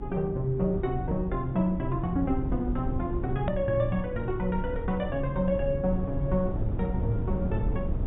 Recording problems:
treble cut off; nothing above 4 kHz
mains hum; 60 Hz, harmonics up to 360 Hz, SNR 15 dB
low-frequency rumble; below 130 Hz, SNR 5 dB
edit click; at 3.5 s

